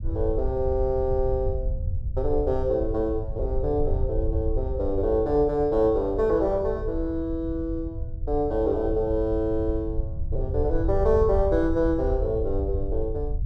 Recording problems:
rumble; below 80 Hz, SNR 6 dB

